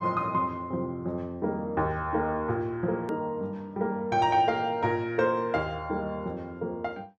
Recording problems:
edit click; at 3 s

